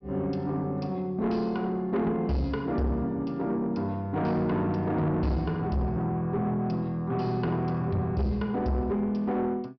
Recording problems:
treble cut off; nothing above 5.5 kHz
distortion; soft clipping, signal-to-distortion ratio 10 dB

